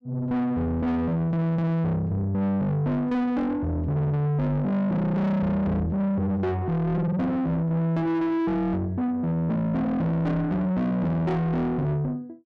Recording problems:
distortion; soft clipping, signal-to-distortion ratio 8 dB

